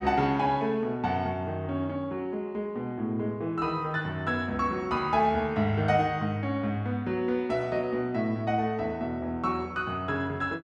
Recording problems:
none

